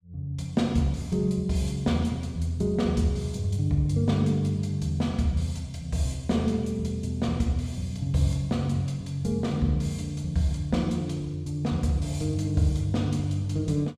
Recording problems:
none

